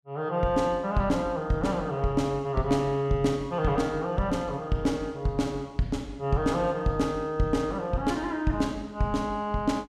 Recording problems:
none

